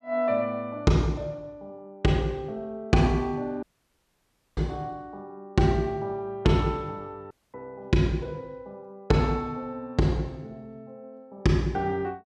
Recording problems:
audio cutting out; at 3.5 s for 1 s and at 7.5 s

